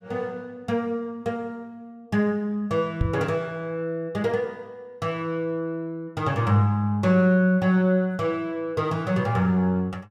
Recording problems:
microphone bump; at 3 s; peak +4 dB vs average level

